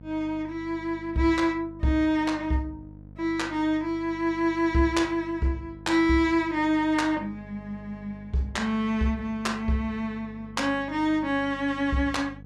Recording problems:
hum; 50 Hz, harmonics up to 750 Hz, SNR 19 dB

